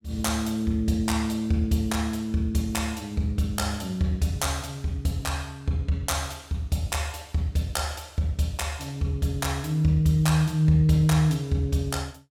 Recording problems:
none

